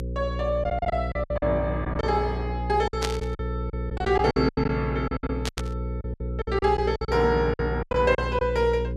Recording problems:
hum; 60 Hz, harmonics up to 540 Hz, SNR 6 dB
lost packets; 14% of the sound replaced, filled with silence
static burst; at 3 s and at 5.5 s; peak +1 dB vs average level

